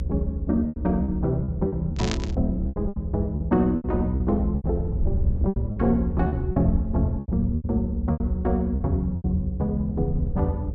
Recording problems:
treble cut off; nothing above 8 kHz
hum; 60 Hz, harmonics up to 540 Hz, SNR 18 dB
low-frequency rumble; below 76 Hz, SNR 3 dB
packet loss; 11% of the sound replaced, filled with repeated pitch periods
static burst; at 2 s; peak +1 dB vs average level

